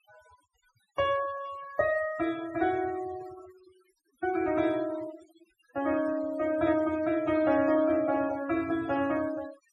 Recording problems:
noise reduction artefacts; signal-to-artefact ratio 17 dB

